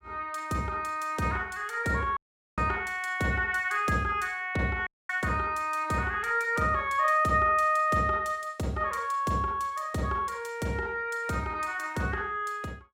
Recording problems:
dropout; at 2 s and at 5 s

